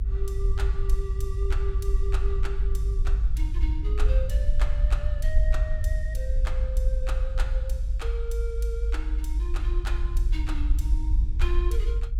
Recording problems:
low-frequency rumble; below 54 Hz, SNR -11 dB

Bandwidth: 16 kHz